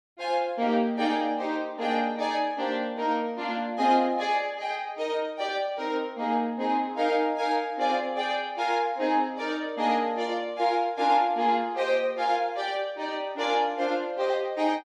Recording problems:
none

